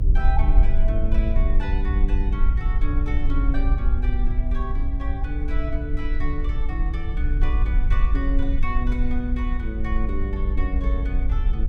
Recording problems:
rumble; below 54 Hz, SNR -8 dB

